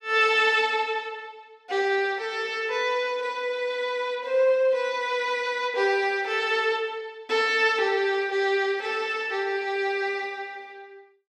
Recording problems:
none

